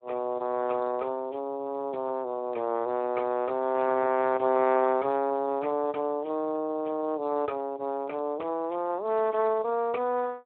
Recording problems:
telephone audio; 260 Hz to 2.2 kHz, Speex

